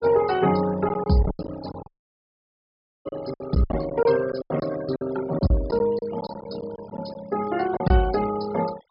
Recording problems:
treble cut off; nothing above 5.5 kHz
noise reduction artefacts; signal-to-artefact ratio 16 dB
lost packets; 11% of the sound replaced, filled with silence
dropout; at 2 s for 1 s

